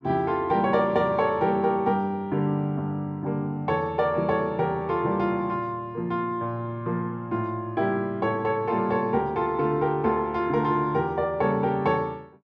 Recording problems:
none

